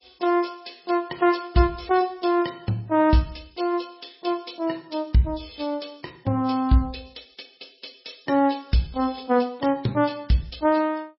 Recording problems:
codec artefacts; MP3, log-spectral distance 6 dB, nothing above 5.5 kHz

